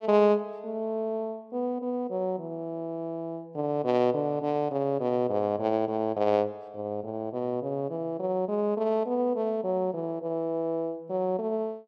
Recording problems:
none

